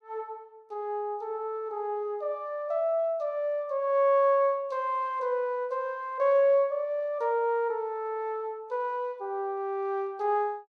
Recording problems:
none

